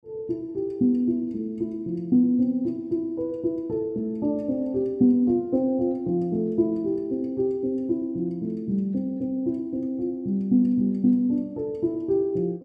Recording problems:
none

